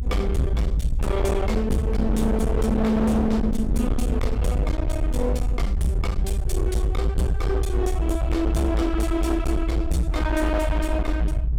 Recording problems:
distorted audio; hard clipping, signal-to-distortion ratio 7 dB
rumble; below 78 Hz, SNR 0 dB

